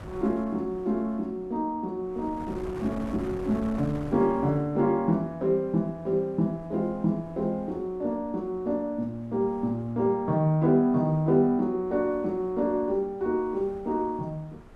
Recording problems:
wind on the microphone; below 610 Hz, SNR 19 dB

